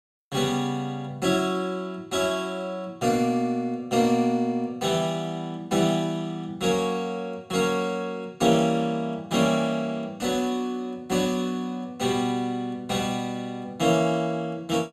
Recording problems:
none

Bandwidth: 14.5 kHz